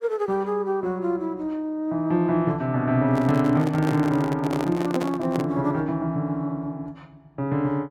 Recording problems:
microphone handling noise; from 3 to 5.5 s; peak 0 dB vs average level

